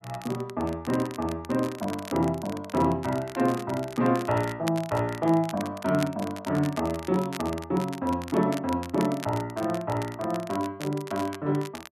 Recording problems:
crackling; vinyl, SNR 15 dB

